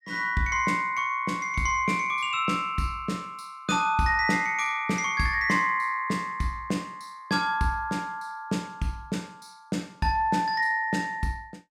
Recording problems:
none

